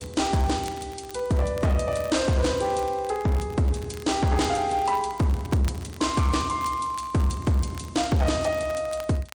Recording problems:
lossy codec; MP3, log-spectral distance 3 dB
distortion; hard clipping, uneven, signal-to-distortion ratio 12 dB
crackling; vinyl, SNR 22 dB

